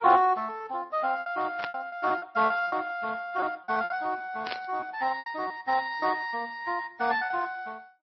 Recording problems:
codec artefacts; Speex, then MP3, log-spectral distance 3 dB, nothing above 4.6 kHz
lost packets; 10% of the sound replaced, filled with repeated pitch periods
static burst; at 1.5 s and at 4.5 s; peak -2 dB vs average level

